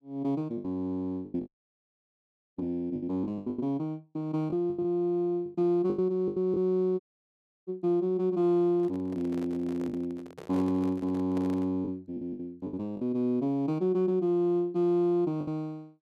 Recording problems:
packet loss; 8% of the sound replaced, filled with the last packet
dropout; at 1.5 s for 1 s and at 7 s for 0.5 s
handling noise; from 8.5 to 12 s; peak -9 dB vs average level

